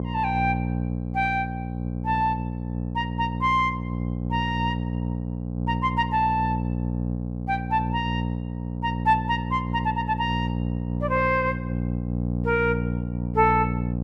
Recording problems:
electrical hum; 60 Hz, harmonics up to 780 Hz, SNR 3 dB

